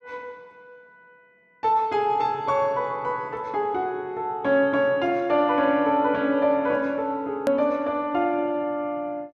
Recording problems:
hard cut with a click; at 7.5 s

